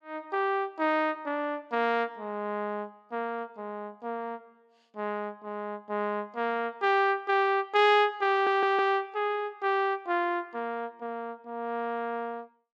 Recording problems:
audio stuttering; at 8.5 s

